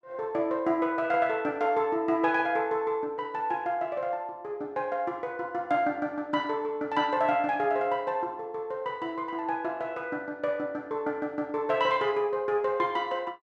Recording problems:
none

